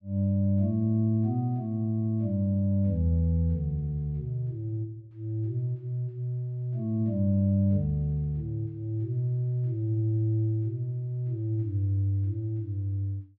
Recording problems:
none

